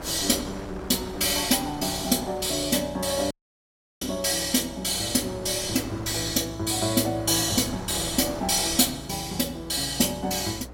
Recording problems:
electrical hum; 60 Hz, harmonics up to 540 Hz, SNR 21 dB
wind noise; below 1 kHz, SNR 17 dB
dropout; at 3.5 s for 0.5 s

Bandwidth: 16.5 kHz